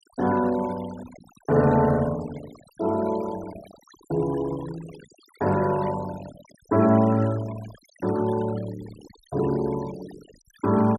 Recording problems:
denoising artefacts; signal-to-artefact ratio 19 dB

